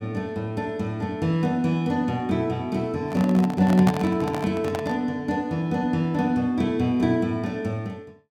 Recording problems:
handling noise; from 3 to 5 s; peak +2 dB vs average level

